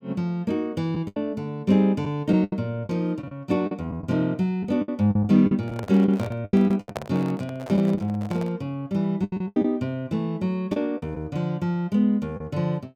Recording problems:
lost packets; 9% of the sound replaced, filled with the last packet
microphone handling noise; from 5.5 to 8.5 s; peak -2 dB vs average level

